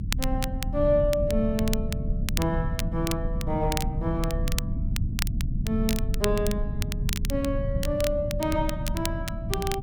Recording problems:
rumble; below 130 Hz, SNR 2 dB
crackle; vinyl, SNR 8 dB

